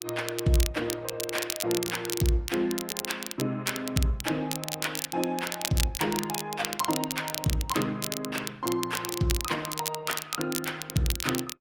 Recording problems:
lossy codec; Opus, log-spectral distance 3 dB, nothing above 16.5 kHz
crackle; vinyl, SNR 4 dB

